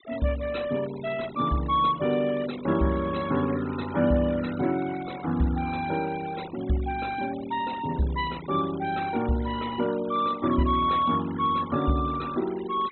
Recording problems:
treble missing; nothing above 4 kHz
denoising artefacts; signal-to-artefact ratio 17 dB

